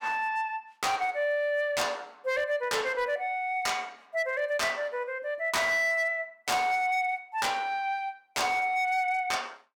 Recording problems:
distorted audio; hard clipping, signal-to-distortion ratio 11 dB

